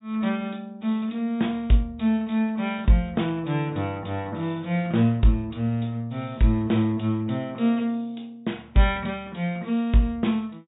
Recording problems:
treble missing; nothing above 4 kHz

